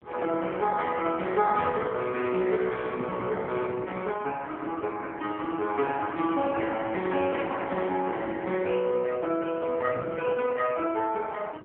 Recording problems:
telephone audio; 280 Hz to 2.5 kHz, AMR-NB
wind on the microphone; below 460 Hz, SNR 16 dB

